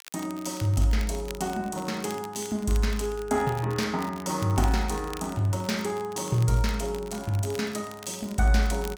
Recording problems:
crackle; vinyl, SNR 18 dB

